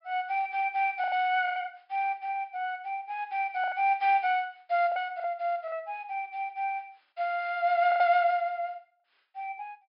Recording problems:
low-pass filter; nothing above 5.5 kHz
lost packets; 5% of the sound replaced, filled with the last packet

